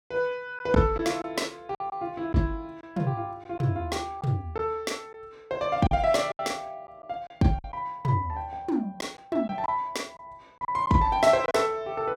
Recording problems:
lost packets; 5% of the sound replaced, filled with silence

